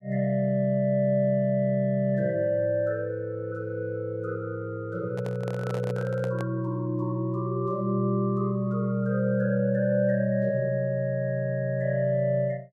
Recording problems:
handling noise; from 5 to 6.5 s; peak -7 dB vs average level

